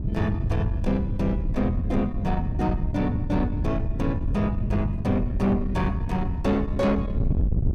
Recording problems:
distorted audio; soft clipping, signal-to-distortion ratio 12 dB
wind noise; below 130 Hz, SNR 2 dB

